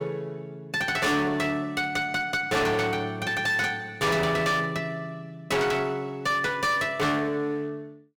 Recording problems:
distorted audio; hard clipping, uneven, signal-to-distortion ratio 6 dB

